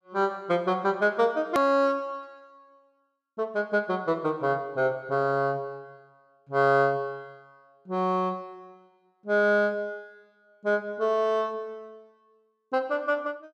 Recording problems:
edit click; at 1.5 s

